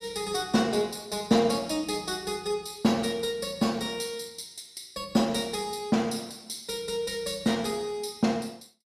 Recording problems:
none

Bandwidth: 14.5 kHz